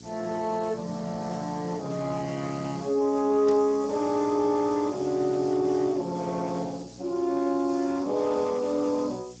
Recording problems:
lossy codec; Speex, log-spectral distance 8 dB
hum; 60 Hz, harmonics up to 840 Hz, SNR 22 dB
background hiss; slope +5 dB per octave, SNR 23 dB
static burst; at 3.5 s; peak -11 dB vs average level

